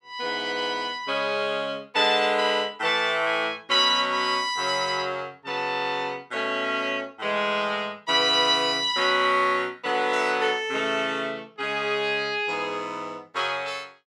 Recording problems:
none

